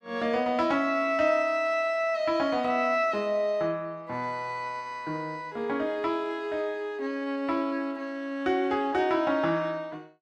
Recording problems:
none

